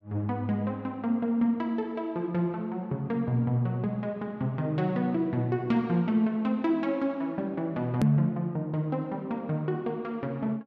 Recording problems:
click at an edit; at 8 s

